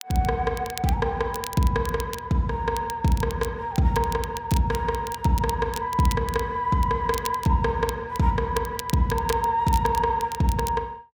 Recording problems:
crackling; vinyl, SNR 15 dB

